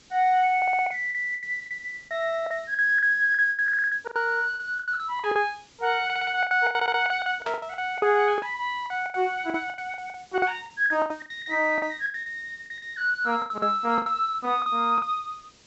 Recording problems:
treble cut off; nothing above 7.8 kHz
hiss; SNR 29 dB
lost packets; 17% of the sound replaced, filled with the last packet
stutter; 4 times, first at 0.5 s
burst of static; at 7.5 s; peak -7 dB vs average level

